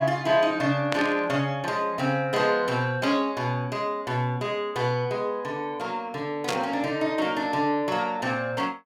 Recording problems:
burst of static; at 1 s and at 6.5 s; peak +1 dB vs average level

